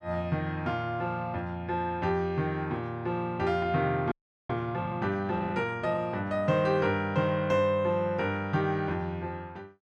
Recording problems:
audio freezing; at 4 s

